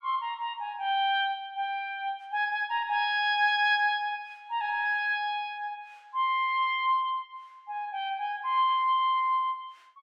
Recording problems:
none

